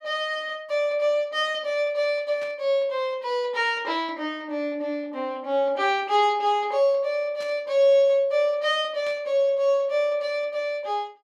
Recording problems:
static burst; at 2.5 s, at 7.5 s and at 9 s; peak -14 dB vs average level

